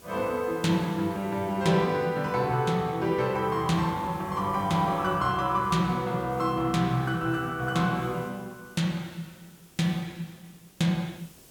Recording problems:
background hiss; SNR 25 dB

